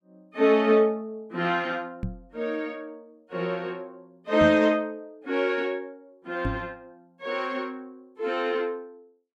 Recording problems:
microphone thump; at 2 s, at 4.5 s and at 6.5 s; peak 0 dB vs average level

